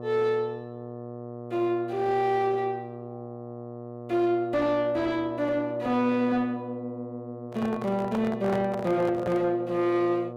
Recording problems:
distortion; soft clipping, signal-to-distortion ratio 9 dB
hum; 60 Hz, harmonics up to 1.3 kHz, SNR 12 dB
handling noise; from 7.5 to 9.5 s; peak -2 dB vs average level

